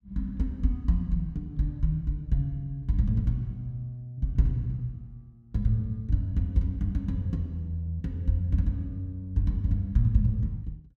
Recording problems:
none

